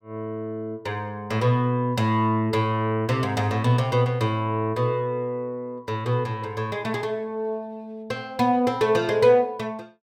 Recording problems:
none

